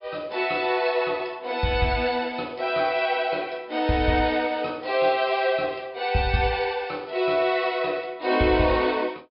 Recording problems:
low-pass filter; nothing above 5.5 kHz

